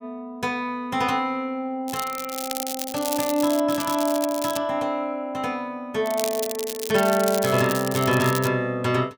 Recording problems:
crackling; from 2 to 4.5 s and from 6 to 8.5 s; loose cable, SNR 7 dB

